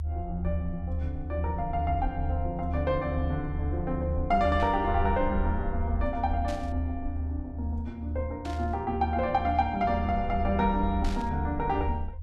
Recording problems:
rumble; below 78 Hz, strongest tone 78 Hz, SNR 3 dB
burst of static; 4 times, first at 4.5 s; peak -8 dB vs average level

